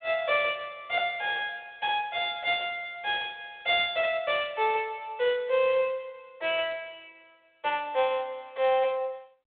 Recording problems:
telephone audio; 340 Hz to 3.6 kHz, G.726

